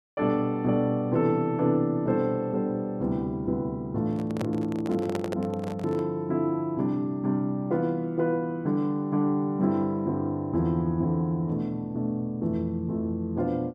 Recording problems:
handling noise; from 4 to 6 s; peak -1 dB vs average level

